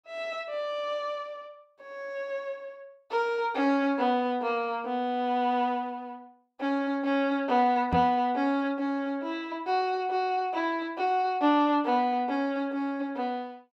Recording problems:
knock on the microphone; at 8 s; peak +3 dB vs average level

